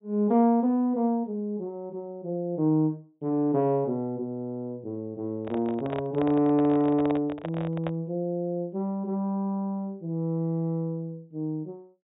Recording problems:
treble missing; nothing above 4 kHz
handling noise; from 5.5 to 8 s; peak -2 dB vs average level

